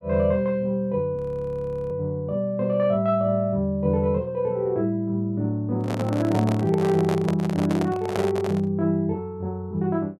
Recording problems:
audio freezing; at 1 s for 0.5 s
handling noise; from 6 to 8.5 s; peak 0 dB vs average level

